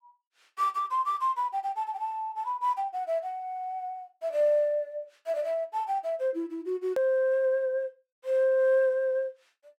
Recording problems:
hard cut with a click; at 7 s

